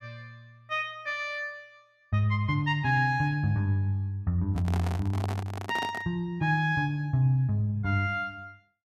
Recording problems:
microphone handling noise; from 4.5 to 6 s; peak -3 dB vs average level

